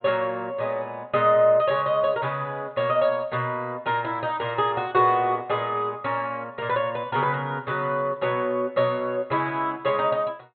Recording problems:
low-pass filter; nothing above 4 kHz

